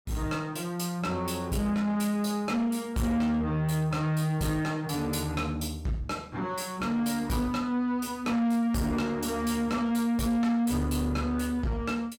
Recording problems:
distorted audio; soft clipping, signal-to-distortion ratio 10 dB

